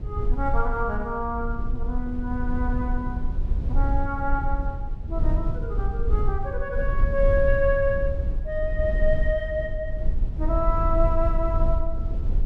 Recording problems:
rumble; below 56 Hz, SNR 0 dB

